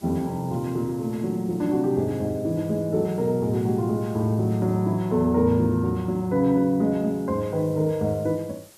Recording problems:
hiss; SNR 27 dB

